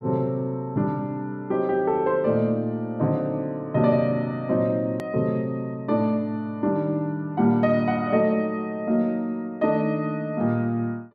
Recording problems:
click at an edit; at 5 s

